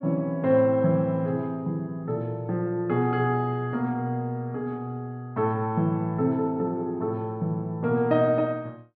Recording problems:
treble cut off; nothing above 5.5 kHz

